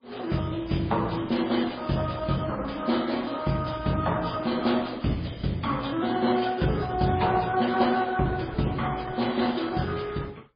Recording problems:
codec artefacts; Opus, then MP3, log-spectral distance 5 dB, nothing above 4.1 kHz

